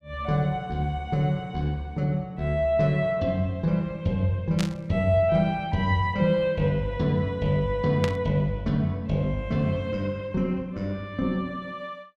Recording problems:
burst of static; at 4.5 s and at 8 s; peak -1 dB vs average level

